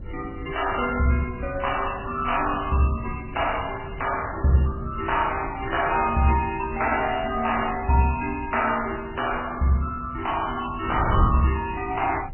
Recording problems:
lossy codec; MP3, then MP2, log-spectral distance 6 dB, nothing above 2.8 kHz
wind on the microphone; below 130 Hz, SNR 11 dB

